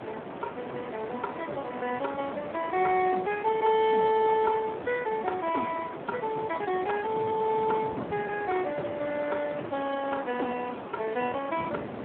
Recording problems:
phone line; 260 Hz to 3.3 kHz, Speex
background hiss; SNR 10 dB
wind on the microphone; below 400 Hz, SNR 18 dB

